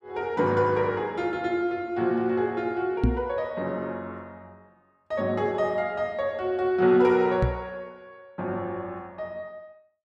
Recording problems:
microphone bump; at 3 s and at 7.5 s; peak +7 dB vs average level

